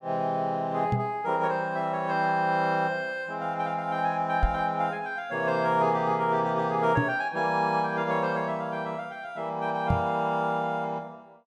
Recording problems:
knock on the microphone; 4 times, first at 1 s; peak +5 dB vs average level

